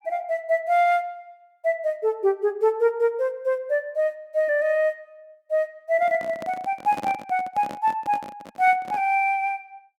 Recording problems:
microphone handling noise; from 6 to 9 s; peak -7 dB vs average level

